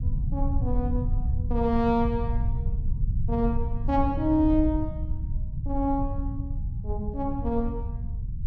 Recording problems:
low-frequency rumble; below 92 Hz, SNR 3 dB

